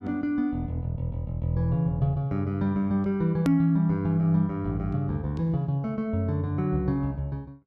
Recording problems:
hard cut with a click; at 3.5 s

